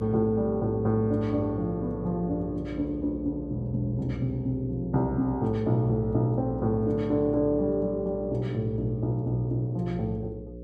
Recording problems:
electrical hum; 60 Hz, harmonics up to 540 Hz, SNR 12 dB

